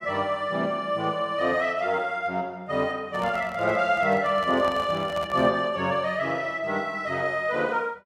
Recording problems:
microphone handling noise; from 3 to 5.5 s; peak -6 dB vs average level

